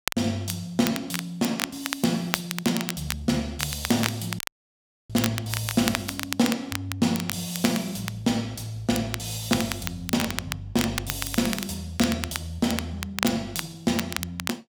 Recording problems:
crackling; vinyl, SNR 5 dB
dropout; at 4.5 s for 0.5 s

